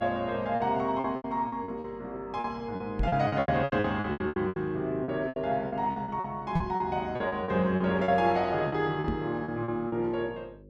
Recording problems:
hum; 50 Hz, harmonics up to 550 Hz, SNR 23 dB
packet loss; 16% of the sound replaced, filled with repeated pitch periods
microphone thump; at 3 s, at 6.5 s and at 9 s; peak +4 dB vs average level

